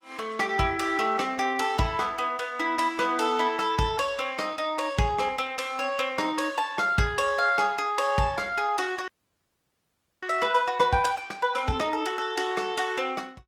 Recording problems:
lossy compression; Opus, log-spectral distance 3 dB, nothing above 19 kHz
frozen audio; at 9 s for 1 s

